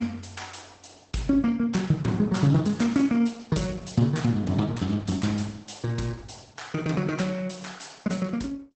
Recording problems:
lossy compression; Opus, log-spectral distance 5 dB, nothing above 8 kHz

